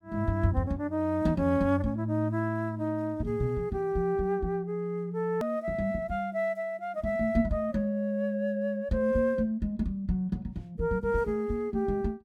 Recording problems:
hard cut with a click; at 5.5 s

